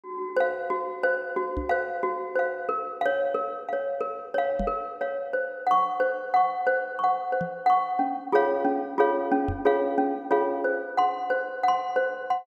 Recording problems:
microphone thump; 4 times, first at 1.5 s; peak -2 dB vs average level

